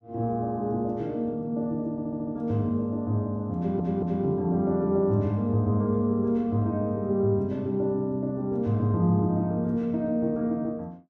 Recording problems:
stutter; at 2 s and at 3.5 s

